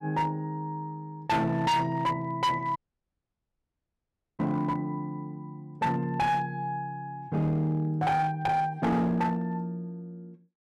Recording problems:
distortion; hard clipping, uneven, signal-to-distortion ratio 8 dB
audio cutting out; at 3 s for 1.5 s

